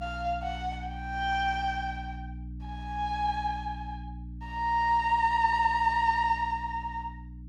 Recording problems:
electrical hum; 60 Hz, harmonics up to 300 Hz, SNR 13 dB

